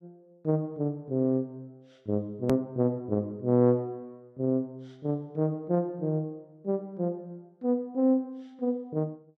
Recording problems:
edit click; at 2.5 s

